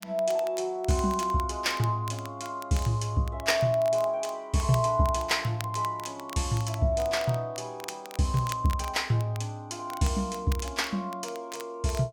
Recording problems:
crackling; vinyl, SNR 18 dB

